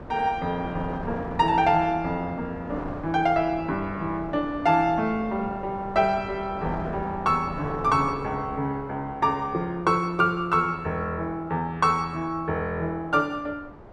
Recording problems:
wind on the microphone; below 780 Hz, SNR 14 dB

